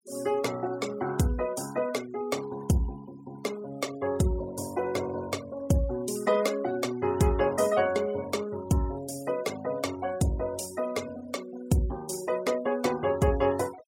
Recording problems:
noise reduction artefacts; signal-to-artefact ratio 18 dB

